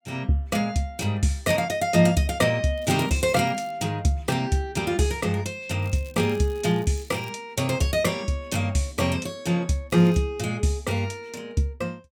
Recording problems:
crackle; at 3 s, from 6 to 7.5 s and at 10 s; loose cable, SNR 26 dB

